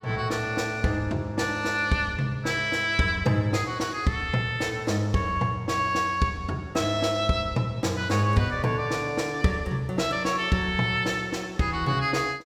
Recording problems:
none

